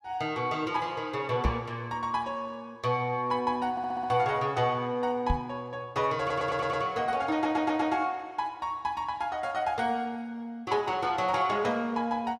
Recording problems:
microphone bump; at 1.5 s and at 5.5 s; peak +5 dB vs average level
audio stuttering; at 3.5 s, at 6 s and at 7.5 s

